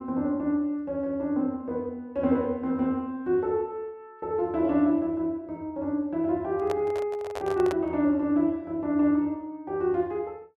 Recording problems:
microphone handling noise; from 6.5 to 8 s; peak -3 dB vs average level

